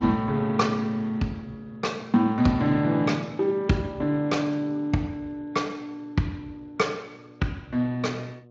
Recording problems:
lossy codec; Speex, log-spectral distance 2 dB
electrical hum; 60 Hz, harmonics up to 1.2 kHz, SNR 26 dB

